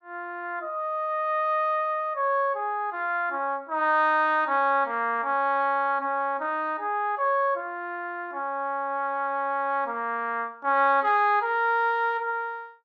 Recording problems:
none

